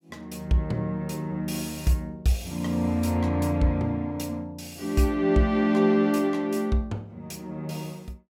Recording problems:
none

